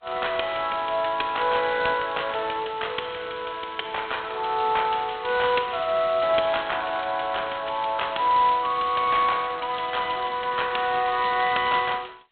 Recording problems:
telephone audio; 340 Hz to 3.8 kHz, G.726

